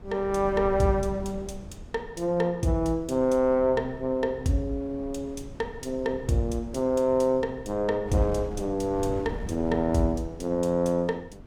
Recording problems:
wind noise; below 210 Hz, SNR 15 dB

